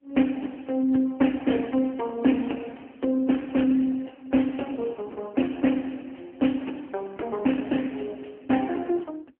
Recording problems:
telephone audio; 220 Hz to 3.1 kHz, AMR-NB

